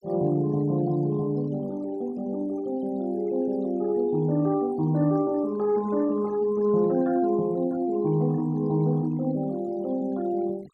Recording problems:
denoising artefacts; signal-to-artefact ratio 25 dB

